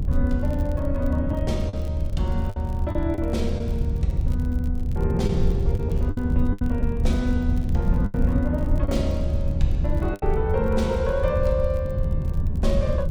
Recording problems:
low-frequency rumble; below 92 Hz, SNR -2 dB
crackling; vinyl, SNR 28 dB
lost packets; 5% of the sound replaced, filled with the last packet

